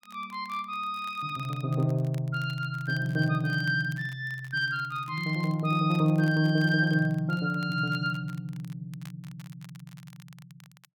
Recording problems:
crackling; vinyl, SNR 26 dB

